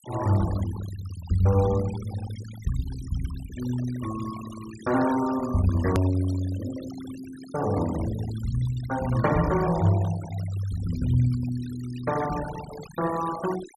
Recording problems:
noise reduction artefacts; signal-to-artefact ratio 15 dB
click at an edit; at 6 s

